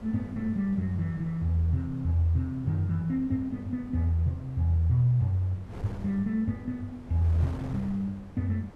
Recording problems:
wind on the microphone; below 410 Hz, SNR 17 dB

